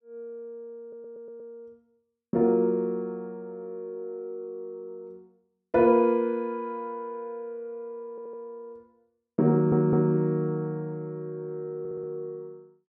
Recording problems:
stutter; 4 times, first at 1 s

